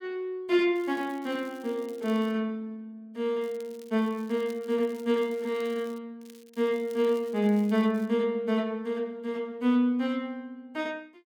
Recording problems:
crackle; from 1 to 2.5 s, from 3.5 to 6 s and from 6 to 8 s; loose cable, SNR 26 dB

